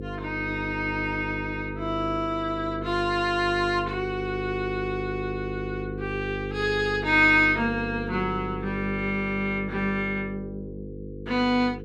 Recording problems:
electrical hum; 50 Hz, harmonics up to 500 Hz, SNR 9 dB

